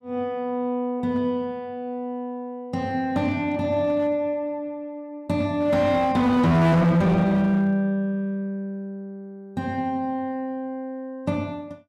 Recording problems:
distorted audio; hard clipping, signal-to-distortion ratio 8 dB

